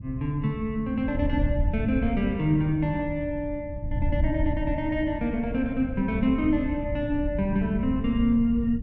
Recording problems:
wind on the microphone; below 100 Hz, SNR 6 dB

